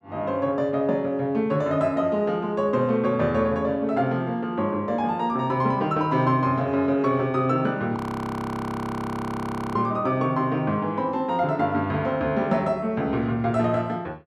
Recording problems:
frozen audio; at 8 s for 2 s

